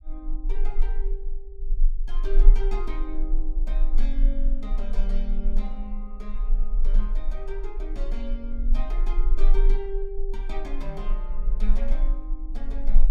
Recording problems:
rumble; below 32 Hz, strongest tone 20 Hz, SNR -10 dB

